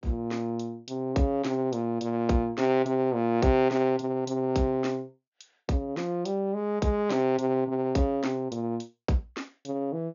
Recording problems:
treble missing; nothing above 6.9 kHz

